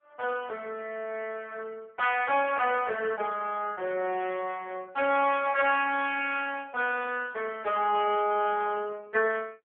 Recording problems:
telephone audio; 300 Hz to 3.3 kHz, AMR-NB

